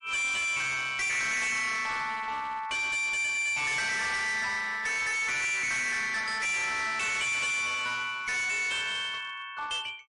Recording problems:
lossy codec; MP3, log-spectral distance 4 dB, nothing above 10.4 kHz
distortion; hard clipping, uneven, signal-to-distortion ratio 6 dB

